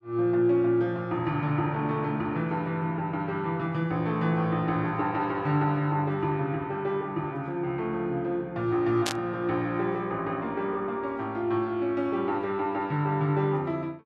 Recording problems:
burst of static; at 9 s; peak +2 dB vs average level

